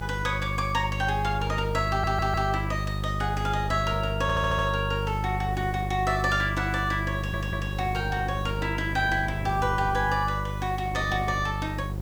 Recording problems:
hum; 50 Hz, harmonics up to 750 Hz, SNR 4 dB
background hiss; SNR 26 dB
wind on the microphone; below 460 Hz, SNR 18 dB
audio stuttering; at 2 s, at 4 s and at 7 s

